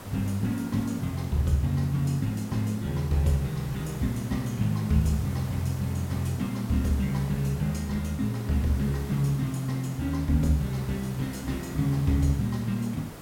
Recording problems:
background hiss; slope -5 dB per octave, SNR 14 dB

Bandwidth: 16.5 kHz